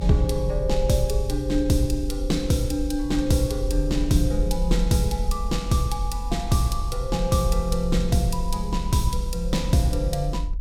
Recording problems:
rumble; below 50 Hz, strongest tone 40 Hz, SNR 6 dB

